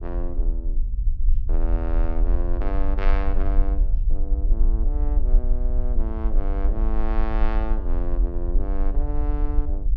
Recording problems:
low-frequency rumble; below 44 Hz, SNR -8 dB

